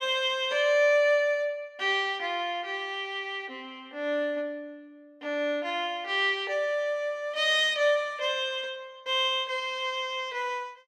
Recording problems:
none

